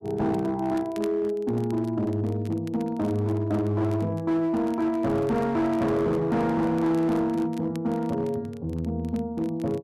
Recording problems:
distorted audio; hard clipping, signal-to-distortion ratio 12 dB
crackle; vinyl, SNR 27 dB

